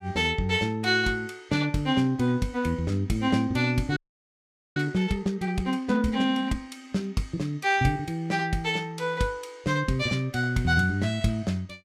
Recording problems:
frozen audio; at 4 s for 1 s

